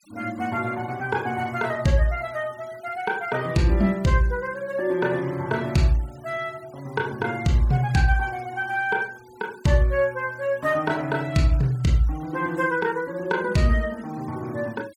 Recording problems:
noise reduction artefacts; signal-to-artefact ratio 24 dB

